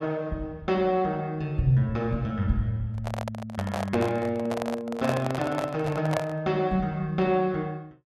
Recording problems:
microphone handling noise; from 3 to 6.5 s; peak +3 dB vs average level

